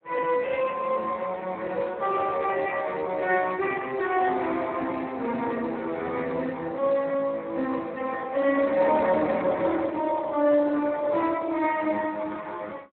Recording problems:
telephone audio; 260 Hz to 2.9 kHz, Speex

